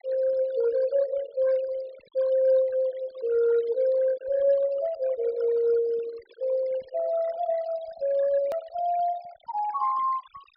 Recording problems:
low-pass filter; nothing above 5.5 kHz
denoising artefacts; signal-to-artefact ratio 20 dB
click at an edit; at 8.5 s

